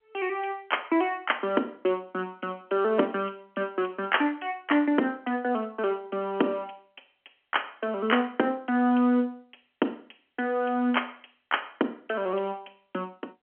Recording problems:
phone line; 220 Hz to 3.2 kHz, G.711

